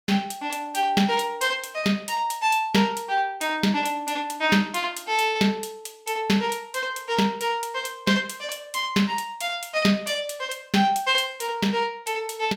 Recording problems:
none

